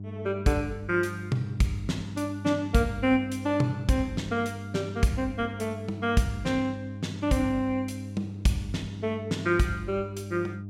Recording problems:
hum; 50 Hz, harmonics up to 400 Hz, SNR 10 dB

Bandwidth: 16.5 kHz